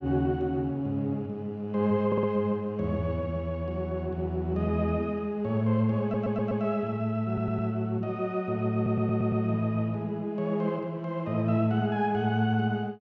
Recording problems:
audio stuttering; 4 times, first at 2 s

